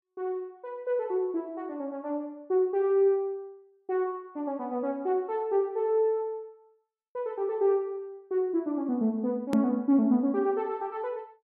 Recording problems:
edit click; at 9.5 s

